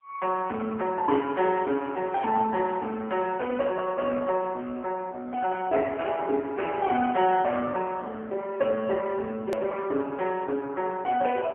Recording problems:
phone line; 240 Hz to 3.2 kHz, AMR-NB, then MP3
hard cut with a click; at 9.5 s

